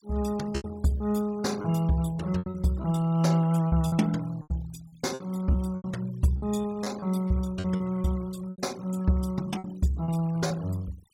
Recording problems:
noise reduction artefacts; signal-to-artefact ratio 21 dB
packet loss; 10% of the sound replaced, filled with repeated pitch periods

